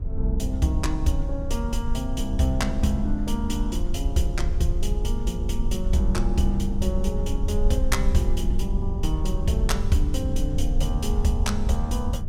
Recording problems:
low-frequency rumble; below 62 Hz, SNR 0 dB

